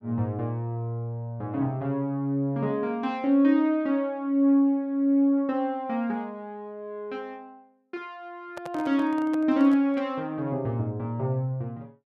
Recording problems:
microphone handling noise; from 8.5 to 10 s; peak -10 dB vs average level

